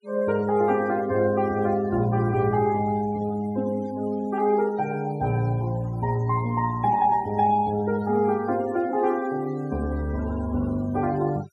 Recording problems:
noise reduction artefacts; signal-to-artefact ratio 21 dB

